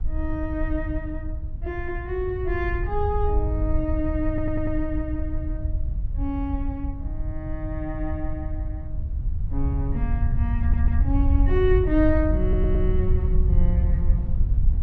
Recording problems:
wind on the microphone; below 78 Hz, SNR -2 dB
audio stuttering; at 4.5 s, at 11 s and at 12 s

